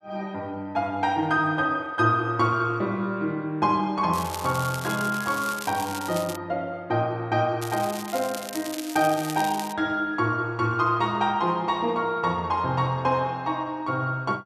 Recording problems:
crackle; from 4 to 6.5 s and from 7.5 to 9.5 s; loose cable, SNR 12 dB

